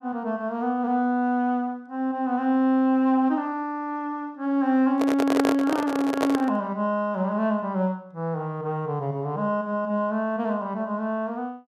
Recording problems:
handling noise; from 5 to 6.5 s; peak +4 dB vs average level

